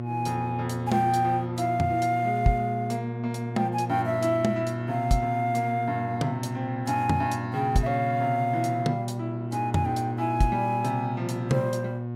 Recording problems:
electrical hum; 60 Hz, harmonics up to 720 Hz, SNR 5 dB

